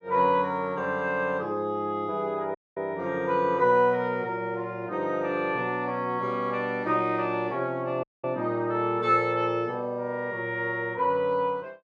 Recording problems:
dropout; at 2.5 s and at 8 s

